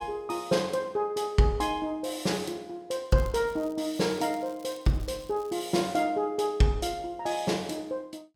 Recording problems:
crackle; from 3 to 6 s; loose cable, SNR 25 dB

